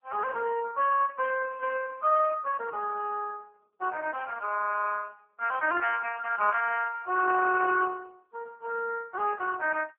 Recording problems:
telephone audio; 320 Hz to 2.6 kHz, AMR-NB

